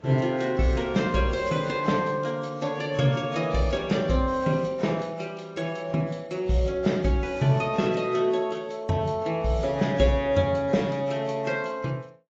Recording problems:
lossy codec; AAC, log-spectral distance 2 dB, nothing above 7.3 kHz

